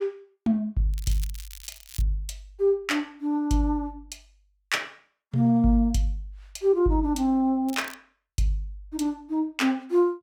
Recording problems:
crackling; from 1 to 2 s and at 7.5 s; loose cable, SNR 18 dB

